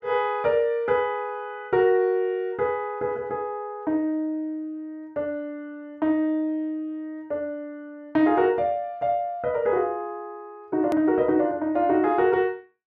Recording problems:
click at an edit; at 11 s

